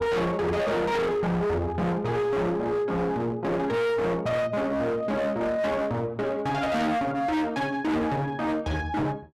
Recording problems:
distorted audio; hard clipping, signal-to-distortion ratio 6 dB

